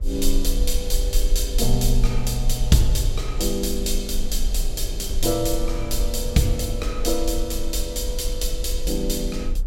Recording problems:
low-frequency rumble; below 40 Hz, strongest tone 18 Hz, SNR 3 dB
wind on the microphone; below 240 Hz, SNR 16 dB

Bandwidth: 16.5 kHz